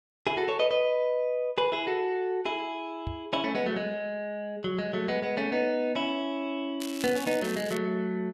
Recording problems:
microphone bump; at 3 s; peak -3 dB vs average level
crackling; at 7 s; loose cable, SNR 12 dB

